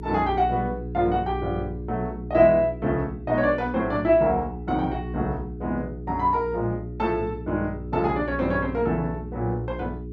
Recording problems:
hum; 60 Hz, harmonics up to 420 Hz, SNR 10 dB

